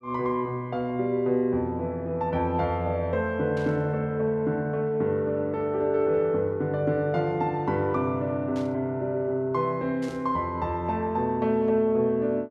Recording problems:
burst of static; at 3.5 s, at 8.5 s and at 10 s; peak -15 dB vs average level

